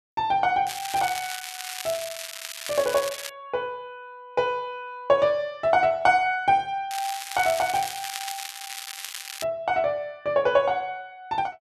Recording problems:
crackle; from 0.5 to 3.5 s and from 7 to 9.5 s; loose cable, SNR 9 dB

